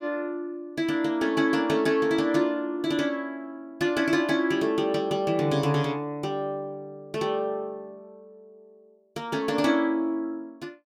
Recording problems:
none

